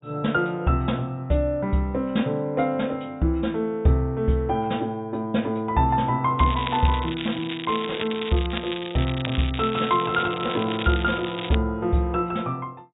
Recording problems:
treble cut off; nothing above 4 kHz
crackling; from 6.5 to 12 s; loose cable, SNR 9 dB

